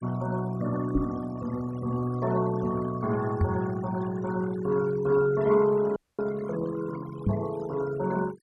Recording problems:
noise reduction artefacts; signal-to-artefact ratio 17 dB
microphone thump; at 1 s, at 3.5 s and at 7.5 s; peak +7 dB vs average level
dropout; at 6 s

